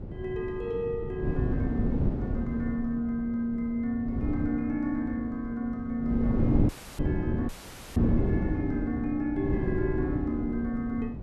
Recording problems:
wind noise; below 240 Hz, SNR 1 dB
dropout; at 6.5 s and at 7.5 s

